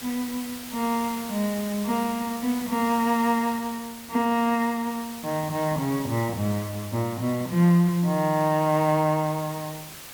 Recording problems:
background hiss; slope -1 dB per octave, SNR 14 dB

